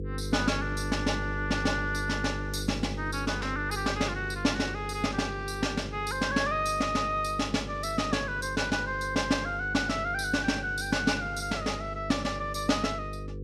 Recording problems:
electrical hum; 50 Hz, harmonics up to 500 Hz, SNR 8 dB

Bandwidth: 15 kHz